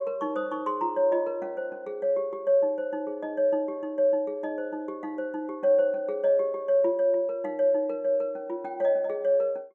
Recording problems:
none

